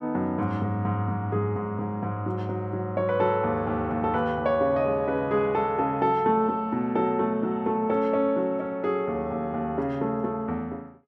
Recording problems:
none

